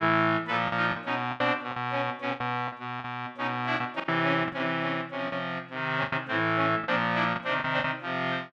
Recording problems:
lost packets; 9% of the sound replaced, filled with the last packet

